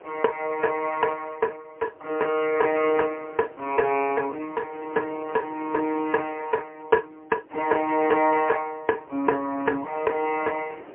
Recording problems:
telephone audio; 240 Hz to 2.5 kHz, AMR-NB, then MP3
wind on the microphone; below 800 Hz, SNR 22 dB

